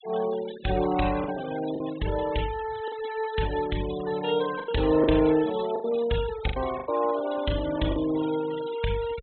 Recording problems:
treble cut off; nothing above 4 kHz
denoising artefacts; signal-to-artefact ratio 15 dB
packet loss; 6% of the sound replaced, filled with the last packet

